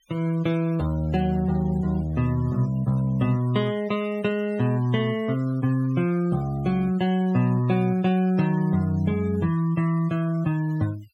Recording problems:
denoising artefacts; signal-to-artefact ratio 23 dB

